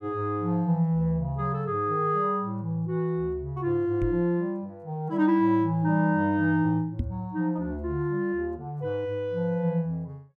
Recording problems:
microphone bump; at 4 s and at 7 s; peak +1 dB vs average level

